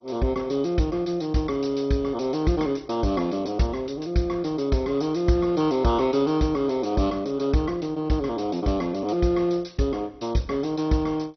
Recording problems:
codec artefacts; MP2, log-spectral distance 4 dB, nothing above 6 kHz

